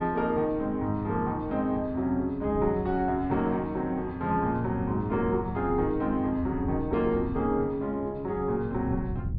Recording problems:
treble missing; nothing above 5 kHz
wind on the microphone; below 140 Hz, SNR 12 dB

